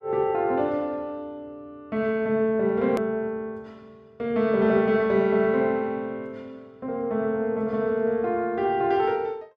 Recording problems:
click at an edit; at 3 s

